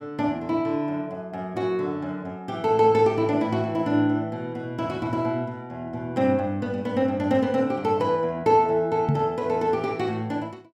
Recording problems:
knock on the microphone; at 9 s; peak +5 dB vs average level

